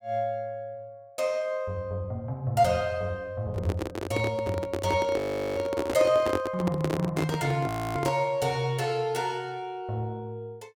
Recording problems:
handling noise; from 3.5 to 8.5 s; peak +3 dB vs average level
frozen audio; at 5 s and at 7.5 s

